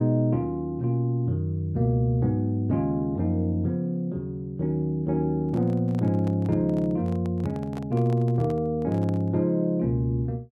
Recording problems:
handling noise; from 5.5 to 9.5 s; peak -11 dB vs average level

